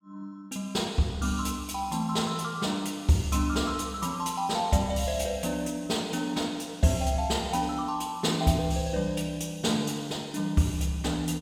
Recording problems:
none

